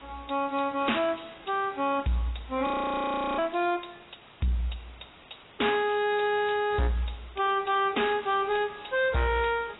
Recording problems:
lossy codec; AAC, log-spectral distance 12 dB, nothing above 3.8 kHz
distortion; soft clipping, signal-to-distortion ratio 10 dB
hiss; SNR 22 dB
audio freezing; at 2.5 s for 0.5 s

